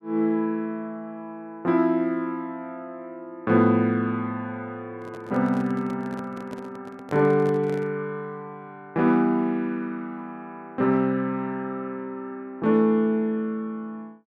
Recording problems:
handling noise; from 5 to 8 s; peak -8 dB vs average level

